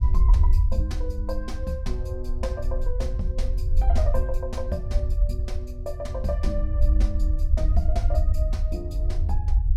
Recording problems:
rumble; below 66 Hz, SNR -8 dB

